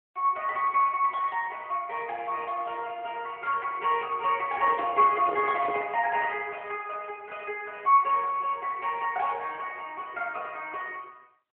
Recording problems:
telephone audio; 260 Hz to 3.3 kHz, AMR-NB
handling noise; from 4.5 to 6 s; peak -4 dB vs average level

